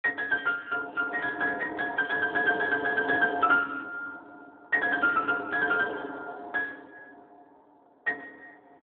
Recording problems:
phone line; 170 Hz to 2.8 kHz, Speex

